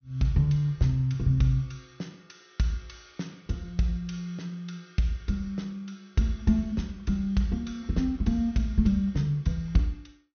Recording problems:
low-pass filter; nothing above 6.3 kHz

